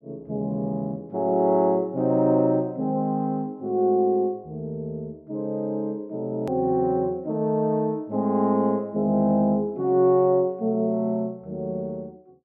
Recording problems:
click at an edit; at 6.5 s

